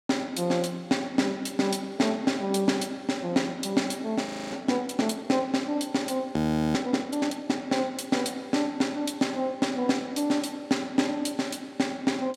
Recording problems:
audio freezing; at 4.5 s and at 6.5 s

